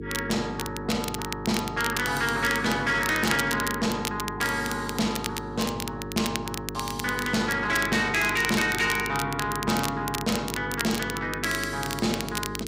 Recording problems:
distorted audio; soft clipping, signal-to-distortion ratio 11 dB
mains hum; 50 Hz, harmonics up to 450 Hz, SNR 10 dB
crackle; vinyl, SNR 8 dB

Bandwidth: 15.5 kHz